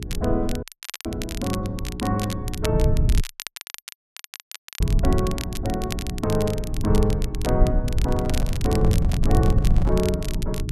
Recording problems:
hum; 60 Hz, harmonics up to 420 Hz, SNR 10 dB
low-frequency rumble; below 100 Hz, SNR -1 dB
crackle; vinyl, SNR 10 dB
audio cutting out; at 0.5 s and at 3 s for 1.5 s
handling noise; from 8 to 10 s; peak -5 dB vs average level

